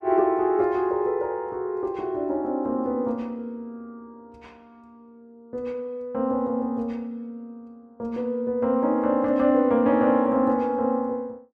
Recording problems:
none

